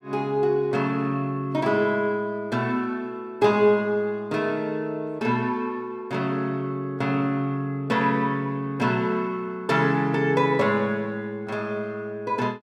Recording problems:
none

